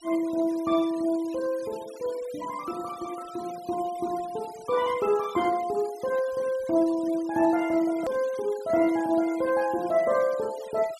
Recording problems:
denoising artefacts; signal-to-artefact ratio 21 dB
click at an edit; at 8 s

